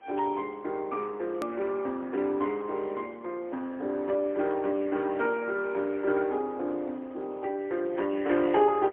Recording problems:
phone line; 240 Hz to 3.3 kHz, AMR-NB, then MP3
hiss; SNR 26 dB
hard cut with a click; at 1.5 s

